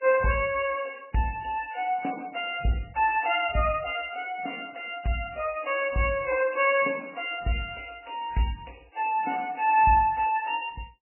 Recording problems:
lossy compression; MP3, log-spectral distance 6 dB, nothing above 2.8 kHz

